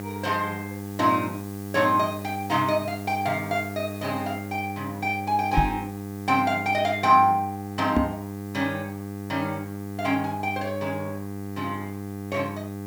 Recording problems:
mains hum; 50 Hz, harmonics up to 2 kHz, SNR 9 dB
background hiss; slope +4 dB per octave, SNR 21 dB
microphone bump; at 5.5 s and at 8 s; peak +7 dB vs average level

